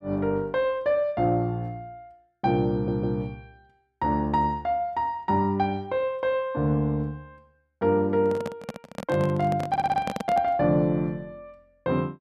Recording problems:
audio stuttering; at 2.5 s and at 9.5 s
handling noise; from 8 to 11 s; peak -2 dB vs average level

